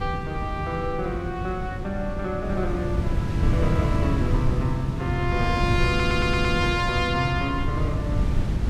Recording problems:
wind noise; below 160 Hz, SNR 0 dB
stutter; at 6 s

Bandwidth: 15.5 kHz